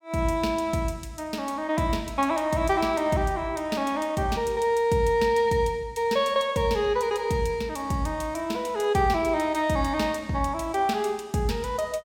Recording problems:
none

